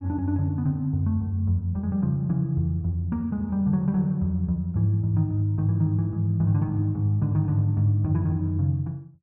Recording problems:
none

